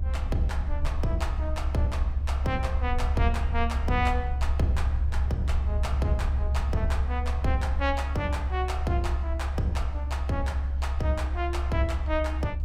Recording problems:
low-frequency rumble; below 70 Hz, strongest tone 68 Hz, SNR -2 dB

